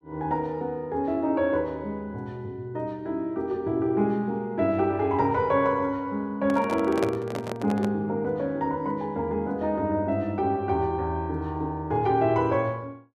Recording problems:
handling noise; from 6.5 to 8 s; peak +1 dB vs average level

